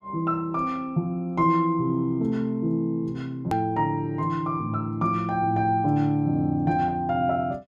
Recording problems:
edit click; at 3.5 s

